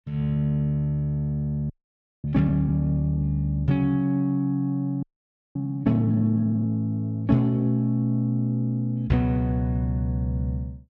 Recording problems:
frozen audio; at 1.5 s for 0.5 s and at 5 s for 0.5 s

